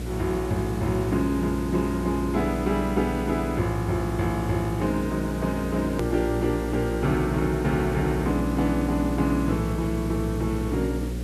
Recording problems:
electrical hum; 60 Hz, harmonics up to 540 Hz, SNR 6 dB
hiss; SNR 15 dB
edit click; at 6 s

